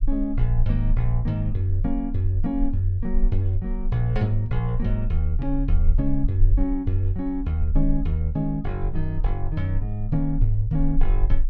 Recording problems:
rumble; below 38 Hz, strongest tone 24 Hz, SNR 4 dB

